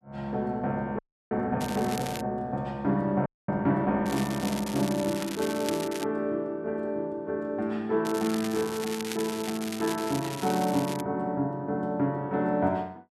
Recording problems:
frozen audio; at 1 s and at 3.5 s
crackle; at 1.5 s, from 4 to 6 s and from 8 to 11 s; loose cable, SNR 10 dB

